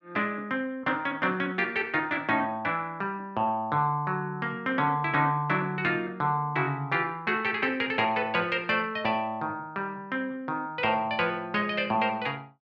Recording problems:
none

